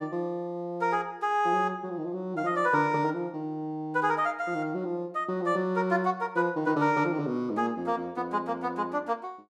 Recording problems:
none

